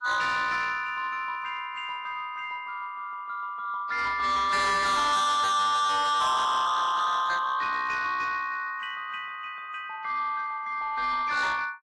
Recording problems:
codec artefacts; AAC, log-spectral distance 2 dB, nothing above 11 kHz
distorted audio; soft clipping, signal-to-distortion ratio 6 dB

